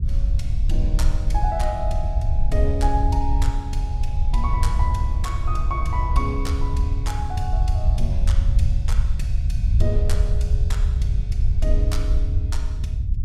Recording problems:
low-frequency rumble; below 74 Hz, SNR -8 dB

